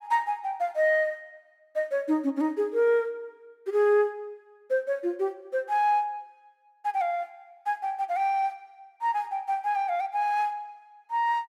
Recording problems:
none

